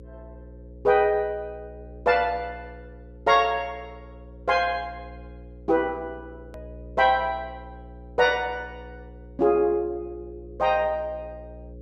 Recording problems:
hum; 60 Hz, harmonics up to 540 Hz, SNR 20 dB
edit click; at 6.5 s

